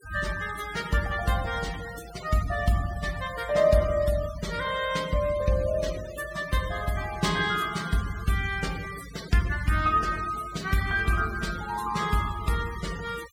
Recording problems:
denoising artefacts; signal-to-artefact ratio 15 dB

